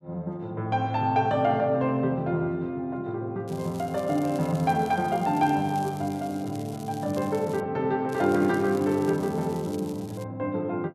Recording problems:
crackle; from 3.5 to 7.5 s and from 8 to 10 s; loose cable, SNR 21 dB

